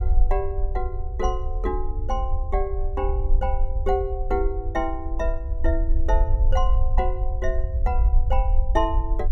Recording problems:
rumble; below 54 Hz, SNR -3 dB

